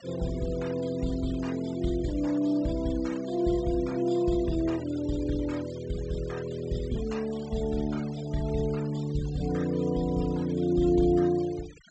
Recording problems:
treble missing; nothing above 8 kHz
noise reduction artefacts; signal-to-artefact ratio 19 dB

